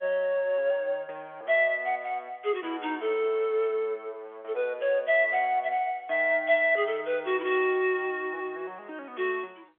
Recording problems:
phone line; 320 Hz to 3.4 kHz, G.711

